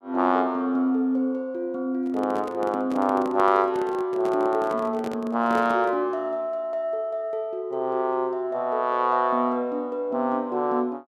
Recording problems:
microphone handling noise; from 2 to 6 s; peak -6 dB vs average level

